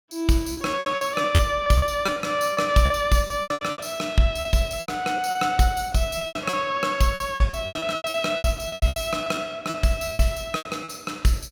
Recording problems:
lost packets; 17% of the sound replaced, filled with repeated pitch periods

